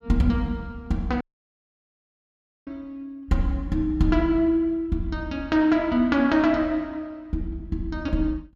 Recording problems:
audio cutting out; at 1 s for 1.5 s

